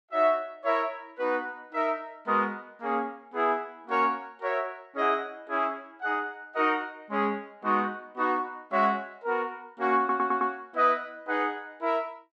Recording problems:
audio stuttering; at 10 s

